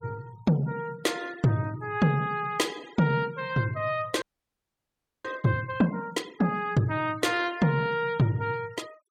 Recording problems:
denoising artefacts; signal-to-artefact ratio 23 dB
audio freezing; at 4 s for 1 s

